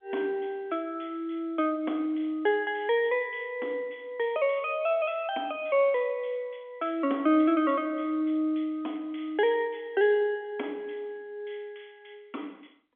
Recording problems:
phone line; 240 Hz to 3.4 kHz, G.711

